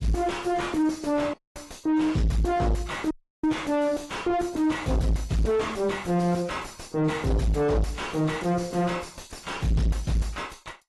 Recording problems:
lossy codec; AAC, log-spectral distance 3 dB, nothing above 11.6 kHz
distorted audio; soft clipping, signal-to-distortion ratio 4 dB
dropout; at 1.5 s and at 3 s

